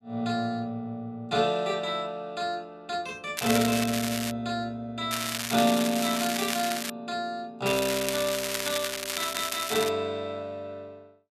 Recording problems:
crackle; at 3.5 s, from 5 to 7 s and from 7.5 to 10 s; loose cable, SNR 2 dB

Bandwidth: 14 kHz